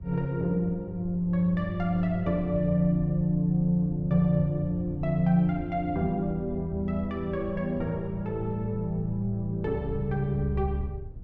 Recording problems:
low-frequency rumble; below 110 Hz, SNR 15 dB

